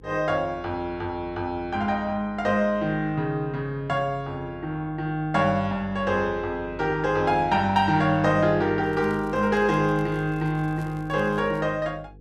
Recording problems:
hum; 50 Hz, harmonics up to 500 Hz, SNR 20 dB
crackle; from 9 to 12 s; loose cable, SNR 30 dB

